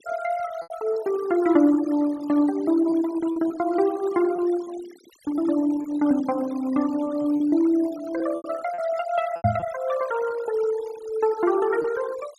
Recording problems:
denoising artefacts; signal-to-artefact ratio 19 dB
packet loss; 5% of the sound replaced, filled with repeated pitch periods
microphone bump; at 9.5 s; peak +4 dB vs average level

